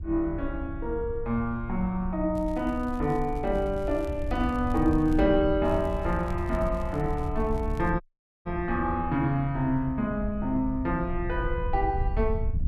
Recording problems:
wind on the microphone; below 78 Hz, SNR 7 dB
crackle; from 2.5 to 5 s and from 5.5 to 8 s; loose cable, SNR 28 dB
dropout; at 8 s

